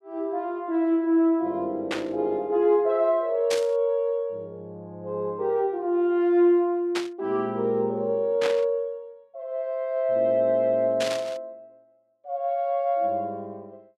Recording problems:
static burst; 5 times, first at 2 s; peak -2 dB vs average level

